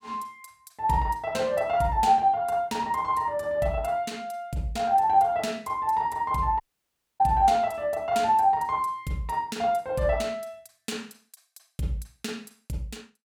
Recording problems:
audio cutting out; at 6.5 s for 0.5 s

